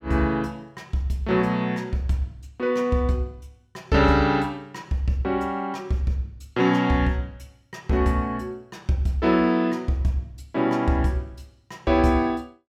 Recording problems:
none

